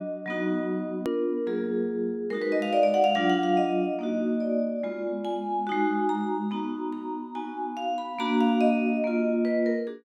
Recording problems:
edit click; at 1 s

